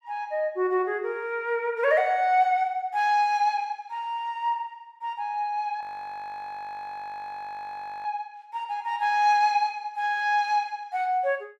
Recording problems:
frozen audio; at 6 s for 2 s

